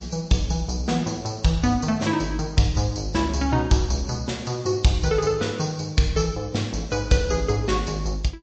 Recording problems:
treble cut off; nothing above 8 kHz
codec artefacts; MP3, log-spectral distance 4 dB

